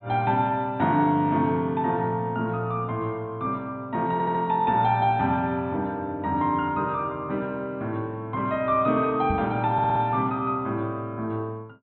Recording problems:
low-pass filter; nothing above 4 kHz
stutter; at 4 s and at 9.5 s
microphone thump; at 9.5 s; peak -1 dB vs average level

